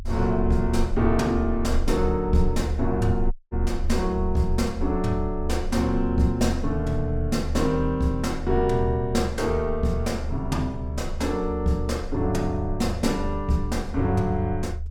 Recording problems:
rumble; below 74 Hz, strongest tone 24 Hz, SNR 6 dB
audio cutting out; at 3.5 s

